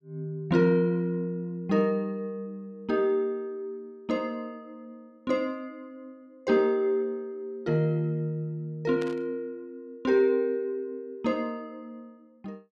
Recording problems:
static burst; at 9 s; peak -10 dB vs average level

